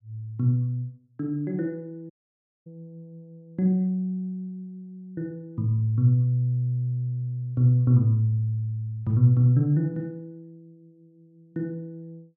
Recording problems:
dropout; at 2 s for 0.5 s

